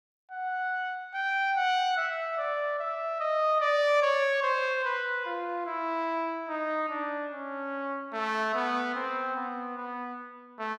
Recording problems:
none

